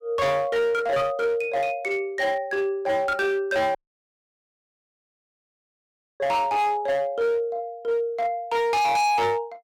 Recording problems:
distorted audio; hard clipping, uneven, signal-to-distortion ratio 6 dB
dropout; at 4 s for 2.5 s

